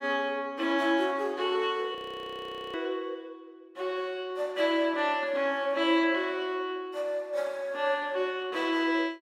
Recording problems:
audio freezing; at 2 s for 1 s

